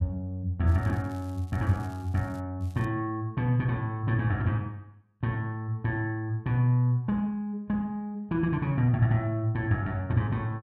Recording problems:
crackle; from 0.5 to 2.5 s and at 2.5 s; loose cable, SNR 29 dB

